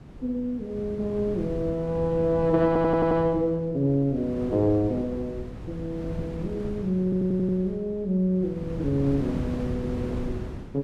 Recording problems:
wind on the microphone; below 270 Hz, SNR 10 dB
stutter; at 2.5 s and at 7 s

